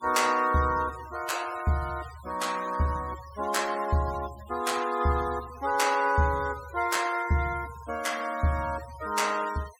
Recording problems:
noise reduction artefacts; signal-to-artefact ratio 17 dB

